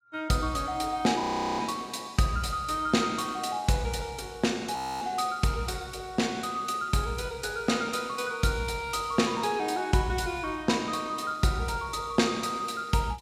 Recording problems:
audio freezing; at 1 s and at 5 s

